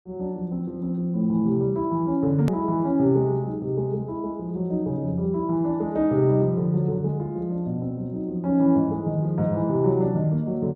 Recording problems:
edit click; at 2.5 s

